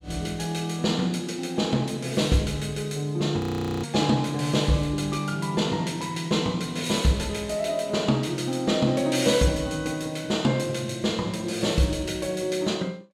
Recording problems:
frozen audio; at 3.5 s

